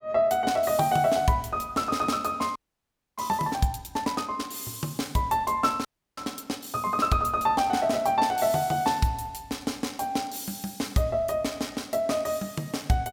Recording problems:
audio freezing; at 2.5 s for 0.5 s and at 6 s

